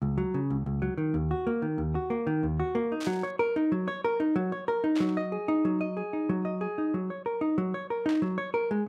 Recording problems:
static burst; at 3 s, at 5 s and at 8 s; peak -6 dB vs average level

